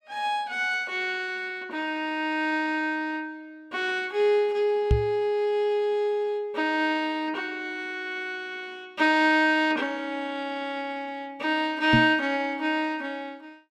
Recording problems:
knock on the microphone; at 5 s and at 12 s; peak +7 dB vs average level

